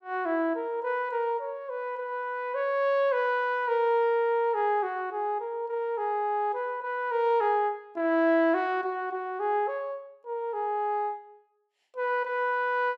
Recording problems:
none

